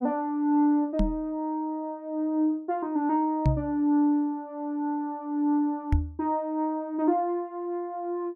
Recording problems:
microphone bump; at 1 s, at 3.5 s and at 6 s; peak +7 dB vs average level

